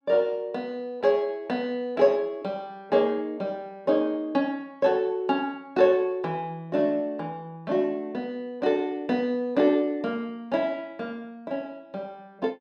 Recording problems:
none

